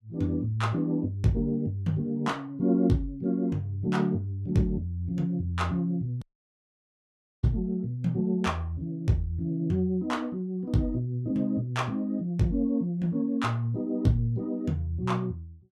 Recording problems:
dropout; at 6 s for 1 s

